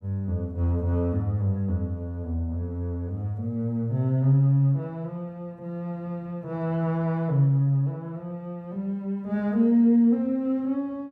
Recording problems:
none

